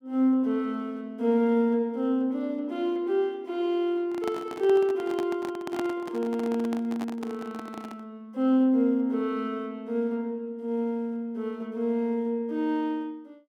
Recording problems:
handling noise; from 4 to 8 s; peak -3 dB vs average level

